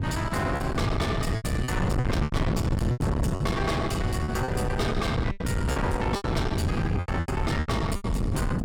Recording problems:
distortion; soft clipping, signal-to-distortion ratio 7 dB
wind on the microphone; below 290 Hz, SNR -1 dB
lost packets; 12% of the sound replaced, filled with repeated pitch periods

